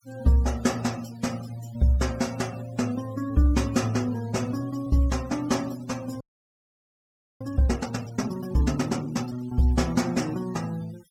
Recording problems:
noise reduction artefacts; signal-to-artefact ratio 19 dB
frozen audio; at 6 s for 1 s

